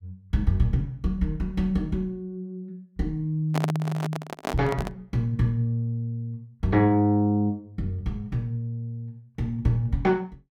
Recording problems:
microphone handling noise; from 3.5 to 5 s; peak +2 dB vs average level

